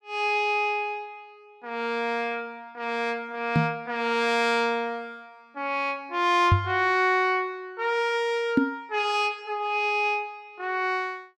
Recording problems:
microphone thump; at 3.5 s, at 6.5 s and at 8.5 s; peak +9 dB vs average level

